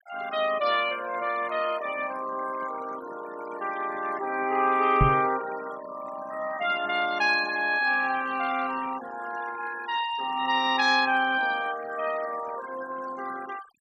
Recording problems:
denoising artefacts; signal-to-artefact ratio 15 dB
microphone thump; at 5 s; peak +7 dB vs average level

